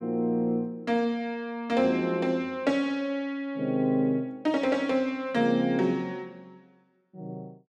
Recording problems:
none

